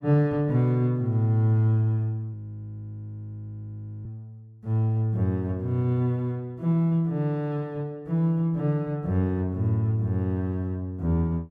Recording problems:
audio freezing; at 2.5 s for 1.5 s

